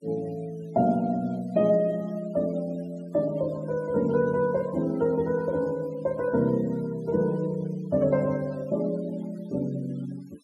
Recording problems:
noise reduction artefacts; signal-to-artefact ratio 24 dB

